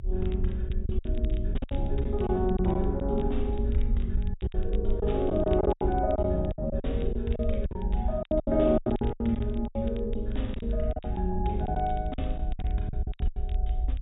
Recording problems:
low-pass filter; nothing above 4 kHz
low-frequency rumble; below 60 Hz, SNR 3 dB
crackling; vinyl, SNR 27 dB
lost packets; 14% of the sound replaced, filled with silence

